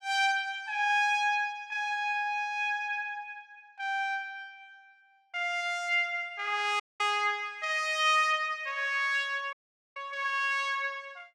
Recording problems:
dropout; at 7 s and at 9.5 s

